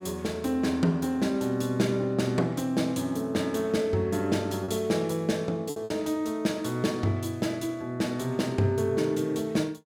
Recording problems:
lost packets; 1.6% of the sound replaced, filled with repeated pitch periods

